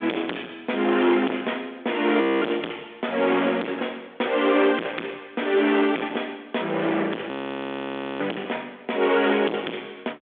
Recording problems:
telephone audio; 240 Hz to 3.5 kHz, G.726
distortion; hard clipping, signal-to-distortion ratio 6 dB
frozen audio; at 2 s and at 7.5 s for 1 s

